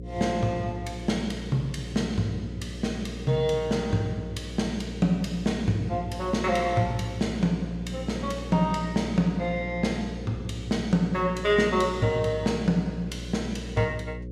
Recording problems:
hum; 60 Hz, harmonics up to 540 Hz, SNR 10 dB

